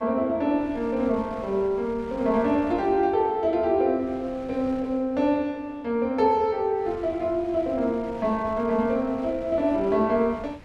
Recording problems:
wind noise; below 880 Hz, SNR 21 dB

